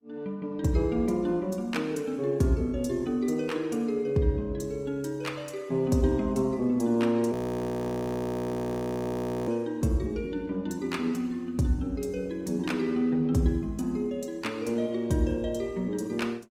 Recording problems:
codec artefacts; Opus, log-spectral distance 2 dB, nothing above 19.5 kHz
audio freezing; at 7.5 s for 2 s

